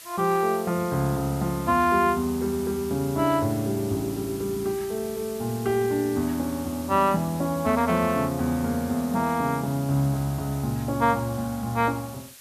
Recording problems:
hiss; slope +2 dB per octave, SNR 16 dB

